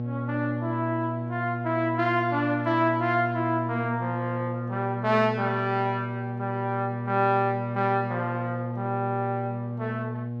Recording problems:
hum; 60 Hz, harmonics up to 840 Hz, SNR 5 dB

